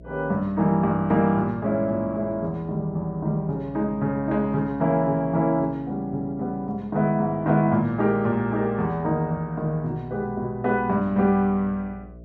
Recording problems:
electrical hum; 60 Hz, harmonics up to 660 Hz, SNR 23 dB

